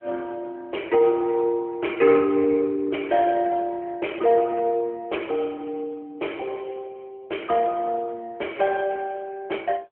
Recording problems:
telephone audio; 260 Hz to 3.1 kHz, AMR-NB

